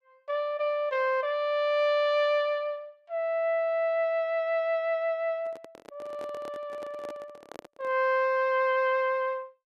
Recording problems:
handling noise; from 5.5 to 8 s; peak -11 dB vs average level

